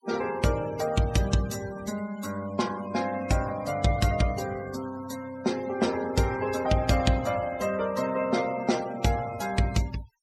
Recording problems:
denoising artefacts; signal-to-artefact ratio 15 dB

